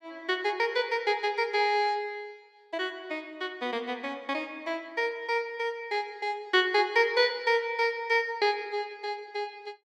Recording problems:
none

